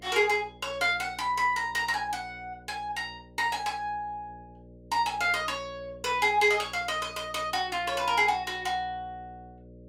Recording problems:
hum; 60 Hz, harmonics up to 600 Hz, SNR 23 dB

